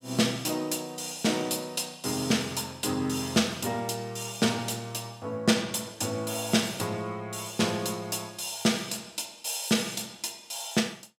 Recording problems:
none

